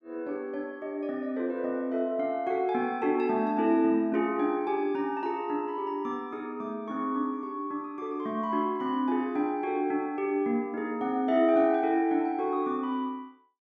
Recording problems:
none

